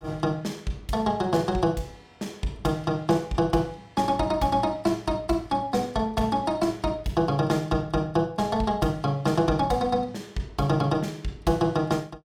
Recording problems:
none

